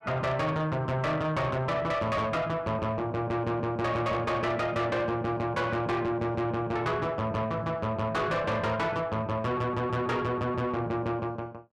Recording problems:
distortion; soft clipping, signal-to-distortion ratio 7 dB

